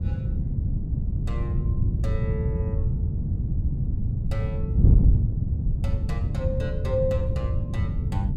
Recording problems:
wind on the microphone; below 130 Hz, SNR -8 dB

